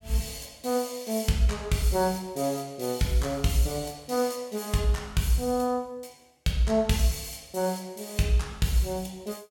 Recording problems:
none

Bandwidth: 17.5 kHz